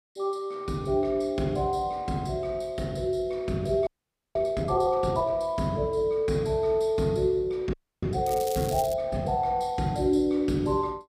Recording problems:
audio freezing; at 4 s and at 7.5 s
crackle; at 8.5 s; loose cable, SNR 13 dB

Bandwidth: 15.5 kHz